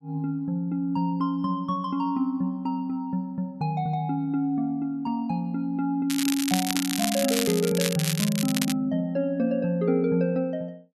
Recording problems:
crackling; from 6 to 8.5 s; loose cable, SNR 3 dB

